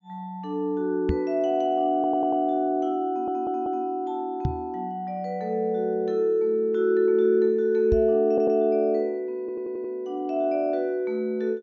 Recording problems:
treble cut off; nothing above 7.2 kHz
knock on the microphone; at 1 s, at 4.5 s and at 8 s; peak +2 dB vs average level
audio stuttering; 4 times, first at 2 s

